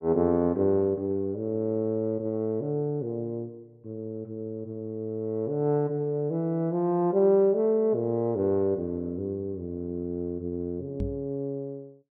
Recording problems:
microphone bump; at 11 s; peak 0 dB vs average level

